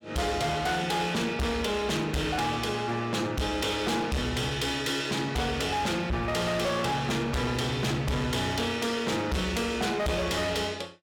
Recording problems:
distortion; hard clipping, signal-to-distortion ratio 6 dB

